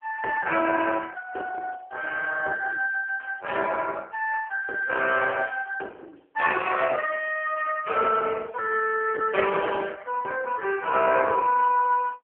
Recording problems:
telephone audio; 300 Hz to 2.6 kHz, AMR-NB

